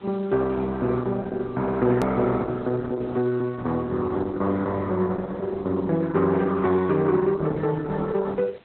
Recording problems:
lossy compression; Opus, log-spectral distance 3 dB, nothing above 13.1 kHz
hiss; SNR 29 dB
hard cut with a click; at 2 s

